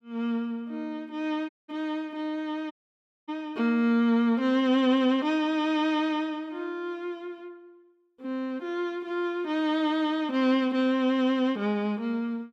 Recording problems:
audio cutting out; at 1.5 s and at 2.5 s for 0.5 s

